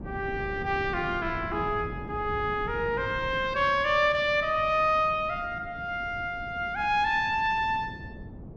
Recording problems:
wind noise; below 270 Hz, SNR 14 dB

